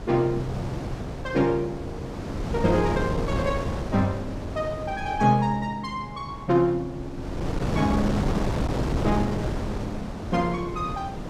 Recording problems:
wind on the microphone; below 470 Hz, SNR 4 dB

